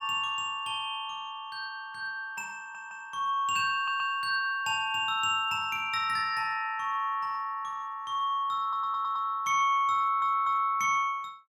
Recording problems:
audio stuttering; 4 times, first at 2.5 s

